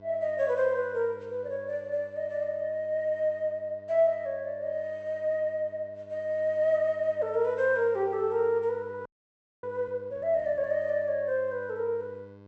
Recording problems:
treble missing; nothing above 7.9 kHz
hum; 50 Hz, harmonics up to 1.5 kHz, SNR 23 dB
audio freezing; at 9 s for 0.5 s

